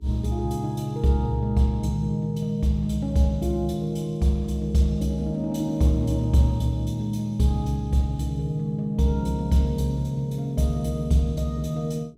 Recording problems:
electrical hum; 60 Hz, harmonics up to 420 Hz, SNR 31 dB

